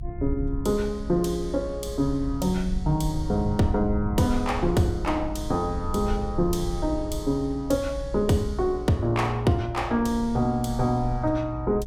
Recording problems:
low-frequency rumble; below 78 Hz, SNR 9 dB

